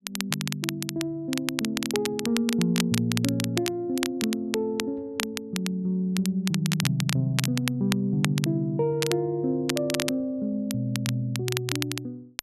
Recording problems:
crackling; vinyl, SNR 5 dB

